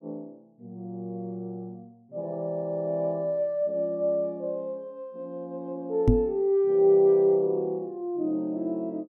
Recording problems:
knock on the microphone; at 6 s; peak +9 dB vs average level

